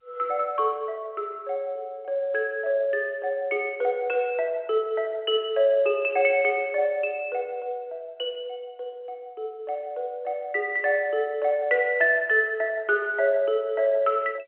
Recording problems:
phone line; 280 Hz to 3.3 kHz, G.711

